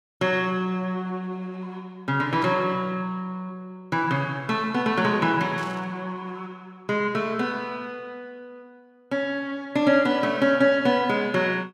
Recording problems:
static burst; at 2.5 s and at 5.5 s; peak -15 dB vs average level

